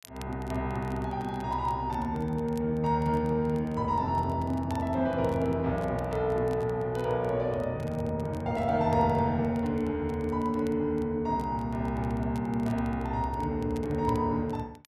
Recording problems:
crackle; vinyl, SNR 27 dB

